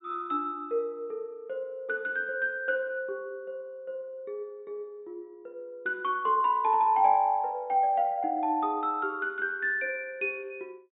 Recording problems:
low-pass filter; nothing above 4 kHz

